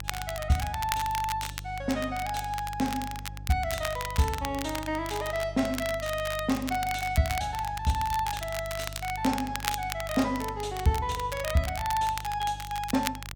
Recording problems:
electrical hum; 50 Hz, harmonics up to 350 Hz, SNR 12 dB
crackle; vinyl, SNR 9 dB

